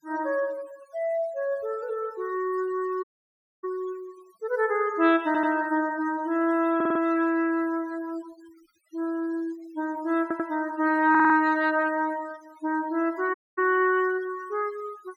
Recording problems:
denoising artefacts; signal-to-artefact ratio 24 dB
dropout; at 3 s for 0.5 s and at 13 s
stutter; 4 times, first at 5.5 s

